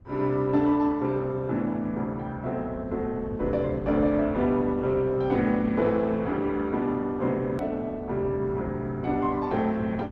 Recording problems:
lossy codec; Opus, log-spectral distance 2 dB, nothing above 13.1 kHz
low-frequency rumble; below 150 Hz, SNR 14 dB
click at an edit; at 7.5 s

